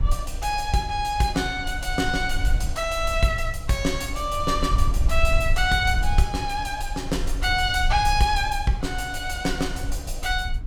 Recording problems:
low-frequency rumble; below 60 Hz, SNR 5 dB

